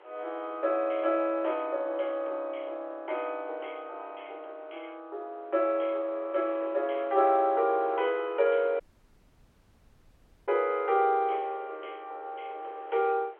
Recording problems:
telephone audio; 340 Hz to 3.3 kHz, G.711
wind on the microphone; below 1.3 kHz, SNR 24 dB
dropout; at 9 s for 1.5 s

